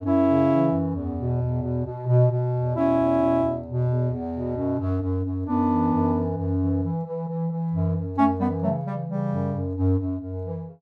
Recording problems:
none

